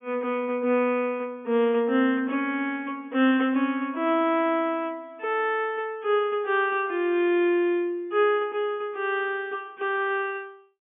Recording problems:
low-pass filter; nothing above 3.4 kHz

